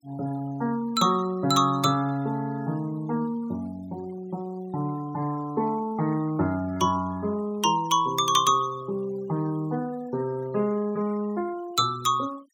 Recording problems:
denoising artefacts; signal-to-artefact ratio 23 dB

